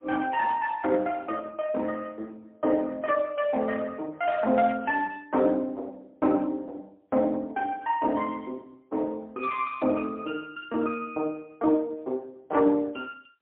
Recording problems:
telephone audio; 240 Hz to 3.5 kHz, AMR-NB, then MP3

